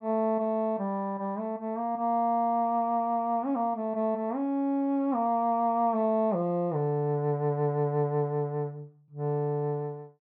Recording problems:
none

